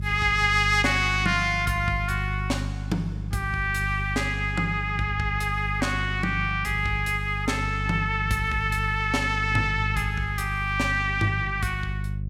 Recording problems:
hum; 50 Hz, harmonics up to 350 Hz, SNR 6 dB

